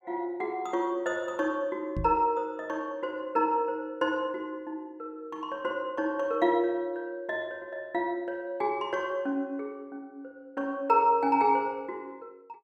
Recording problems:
knock on the microphone; at 2 s; peak -1 dB vs average level

